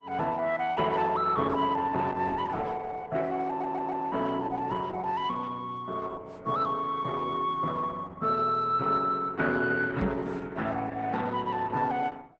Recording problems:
lossy compression; Opus, log-spectral distance 3 dB, nothing above 7.8 kHz
audio stuttering; at 3.5 s
knock on the microphone; at 10 s; peak +4 dB vs average level

